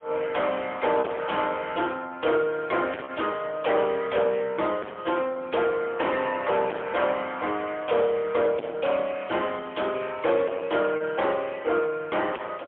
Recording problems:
phone line; 320 Hz to 3.3 kHz, AMR-NB, then MP3
distortion; hard clipping, signal-to-distortion ratio 8 dB
packet loss; 1.3% of the sound replaced, filled with repeated pitch periods

